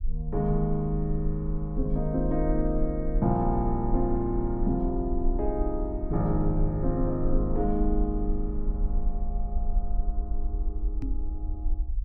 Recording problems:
rumble; below 46 Hz, SNR 4 dB
microphone thump; at 11 s; peak -1 dB vs average level

